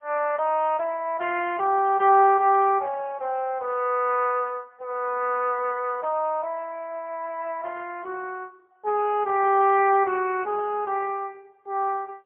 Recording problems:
telephone audio; 340 Hz to 3.1 kHz, AMR-NB, then MP3

